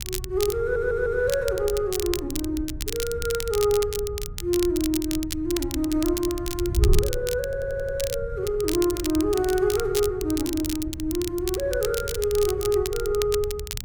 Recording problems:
wind noise; below 86 Hz, SNR 9 dB
crackle; vinyl, SNR 8 dB
audio stuttering; at 0.5 s and at 7.5 s

